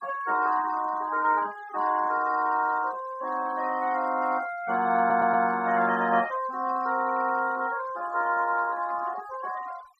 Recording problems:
denoising artefacts; signal-to-artefact ratio 21 dB
audio stuttering; at 5 s

